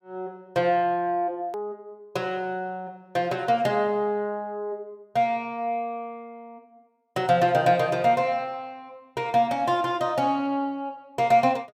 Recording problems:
hard cut with a click; at 1.5 s

